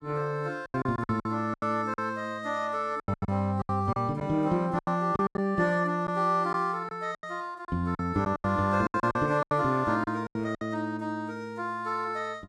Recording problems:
packet loss; 12% of the sound replaced, filled with silence

